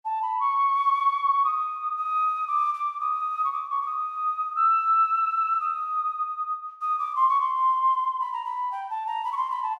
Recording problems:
none

